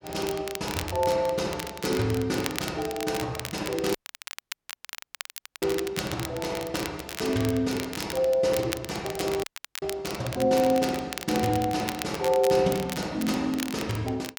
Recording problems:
crackle; vinyl, SNR 10 dB
audio cutting out; at 4 s for 1.5 s and at 9.5 s

